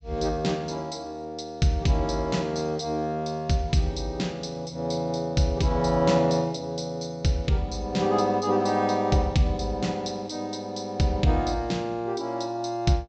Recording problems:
low-pass filter; nothing above 8 kHz

